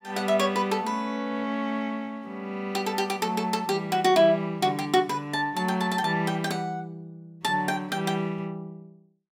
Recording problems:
none

